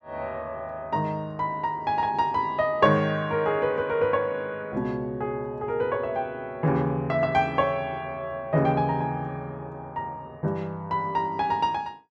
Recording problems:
none

